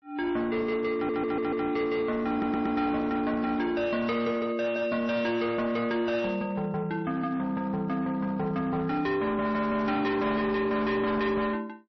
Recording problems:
lossy codec; MP3, log-spectral distance 2 dB, nothing above 5.8 kHz
distortion; hard clipping, uneven, signal-to-distortion ratio 10 dB
stutter; at 1 s and at 2.5 s

